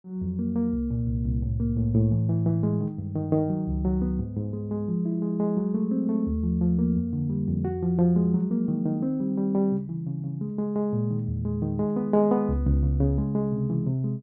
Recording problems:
none

